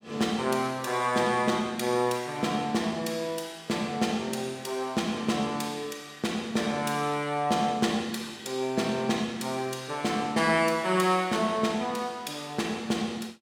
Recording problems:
none

